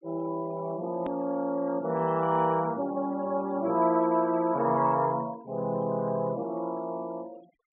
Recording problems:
treble missing; nothing above 4 kHz
denoising artefacts; signal-to-artefact ratio 25 dB
click at an edit; at 1 s

